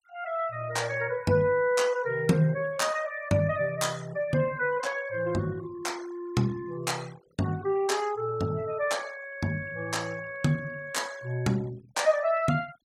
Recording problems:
noise reduction artefacts; signal-to-artefact ratio 22 dB

